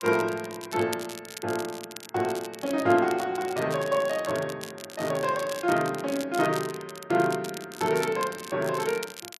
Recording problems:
crackle; vinyl, SNR 14 dB

